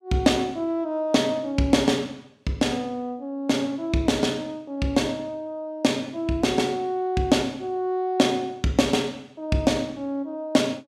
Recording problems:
none

